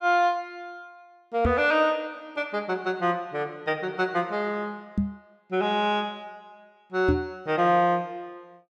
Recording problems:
microphone thump; at 1.5 s, at 5 s and at 7 s; peak +5 dB vs average level

